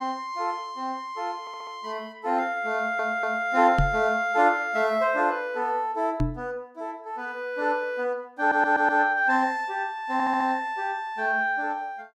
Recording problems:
stutter; 4 times, first at 1.5 s
microphone bump; at 4 s and at 6 s; peak +4 dB vs average level

